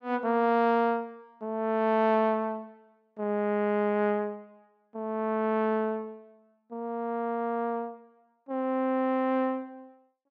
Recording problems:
none

